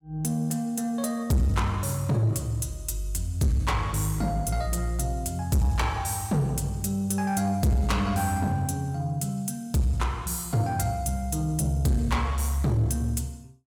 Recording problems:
distorted audio; soft clipping, signal-to-distortion ratio 11 dB

